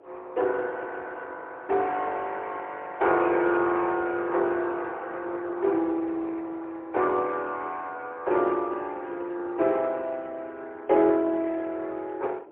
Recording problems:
phone line; 300 Hz to 3.1 kHz, AMR-NB, then MP3
wind on the microphone; below 570 Hz, SNR 21 dB

